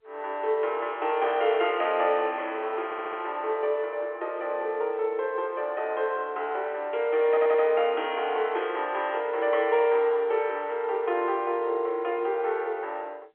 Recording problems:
phone line; 300 Hz to 3.6 kHz, G.711
stutter; at 3 s and at 7.5 s

